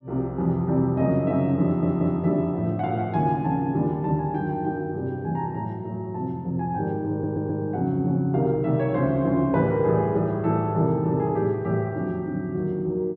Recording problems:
stutter; at 1.5 s and at 7 s

